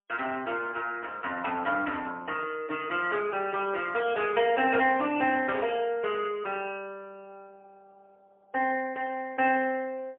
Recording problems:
telephone audio; 260 Hz to 3.1 kHz, AMR-NB, then MP3

